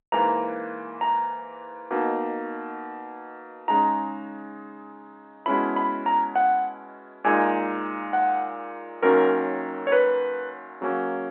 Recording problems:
phone line; 280 Hz to 3.3 kHz, G.711

